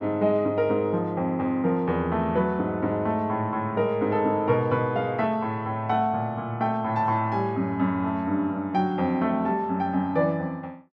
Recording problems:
none

